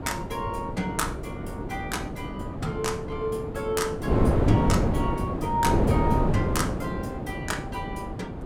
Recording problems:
wind on the microphone; below 390 Hz, SNR -2 dB

